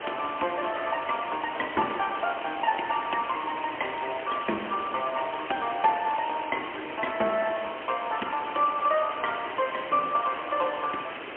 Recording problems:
telephone audio; 260 Hz to 3.1 kHz, AMR-NB, then MP3
hiss; SNR 9 dB

